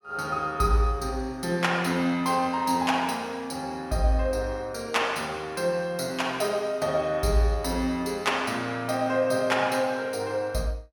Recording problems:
none

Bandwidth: 17.5 kHz